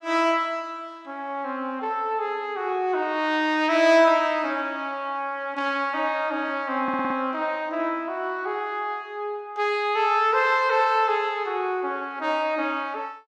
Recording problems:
audio stuttering; at 7 s

